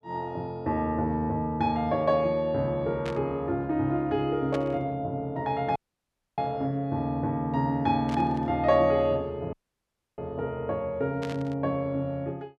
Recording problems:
burst of static; 4 times, first at 3 s; peak -7 dB vs average level
audio cutting out; at 6 s for 0.5 s and at 9.5 s for 0.5 s

